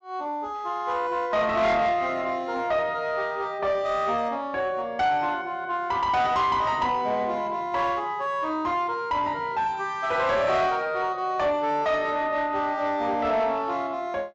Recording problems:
treble cut off; nothing above 8 kHz
distortion; soft clipping, signal-to-distortion ratio 11 dB

